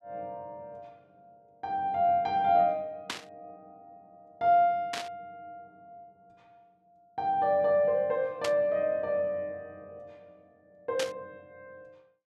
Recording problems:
static burst; 4 times, first at 3 s; peak -2 dB vs average level

